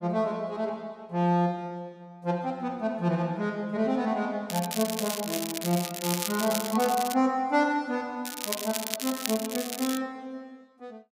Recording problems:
crackling; from 4.5 to 7 s and from 8.5 to 10 s; loose cable, SNR 5 dB

